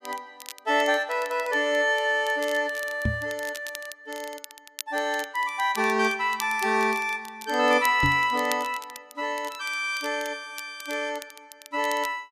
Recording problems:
crackle; vinyl, SNR 17 dB
knock on the microphone; at 3 s and at 8 s; peak +2 dB vs average level

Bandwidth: 14.5 kHz